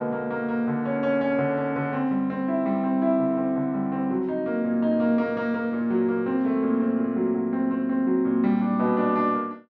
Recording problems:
none

